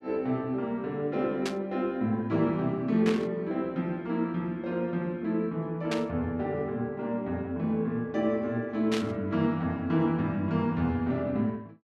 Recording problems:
burst of static; 4 times, first at 1.5 s; peak 0 dB vs average level

